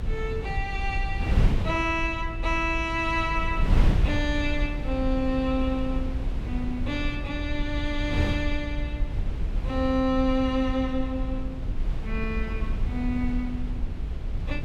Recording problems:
rumble; below 56 Hz, strongest tone 30 Hz, SNR 6 dB
wind on the microphone; below 120 Hz, SNR 3 dB

